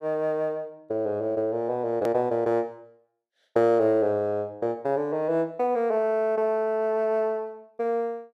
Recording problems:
edit click; at 2 s

